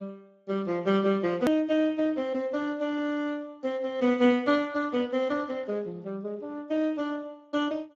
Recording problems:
lossy compression; Speex, log-spectral distance 2 dB, nothing above 14.6 kHz
click at an edit; at 1.5 s

